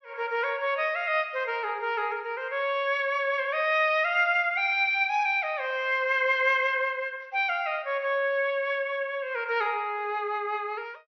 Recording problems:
low-pass filter; nothing above 5.9 kHz

